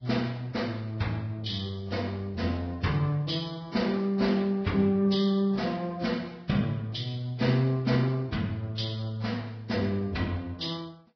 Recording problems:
codec artefacts; AAC, then Vorbis, log-spectral distance 4 dB, nothing above 5.3 kHz

